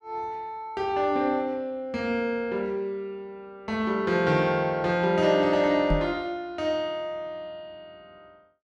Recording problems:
microphone bump; at 6 s; peak +2 dB vs average level

